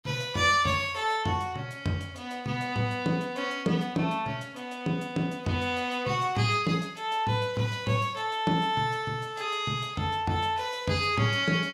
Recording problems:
none

